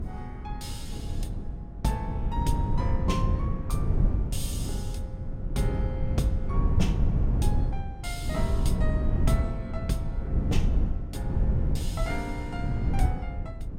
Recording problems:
wind noise; below 120 Hz, SNR -6 dB

